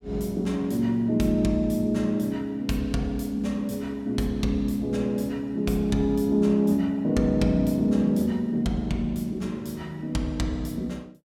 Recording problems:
none

